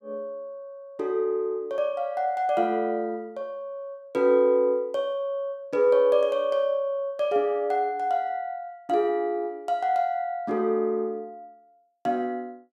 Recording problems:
none

